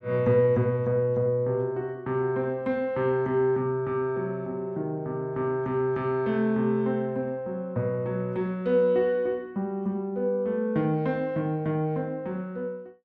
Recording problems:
none

